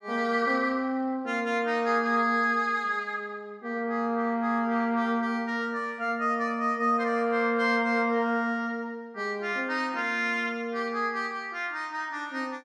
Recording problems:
none

